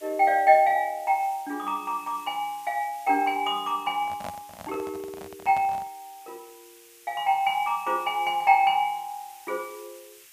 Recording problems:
background hiss; SNR 24 dB
handling noise; from 4 to 6 s; peak -9 dB vs average level

